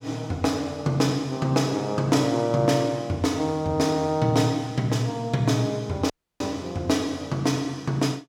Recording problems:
dropout; at 6 s

